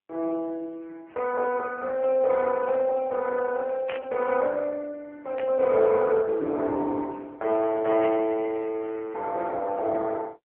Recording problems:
telephone audio; 300 Hz to 2.9 kHz, AMR-NB
static burst; at 4 s, at 5.5 s and at 8 s; peak -6 dB vs average level

